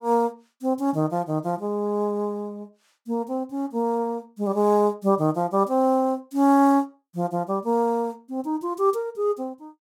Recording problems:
none

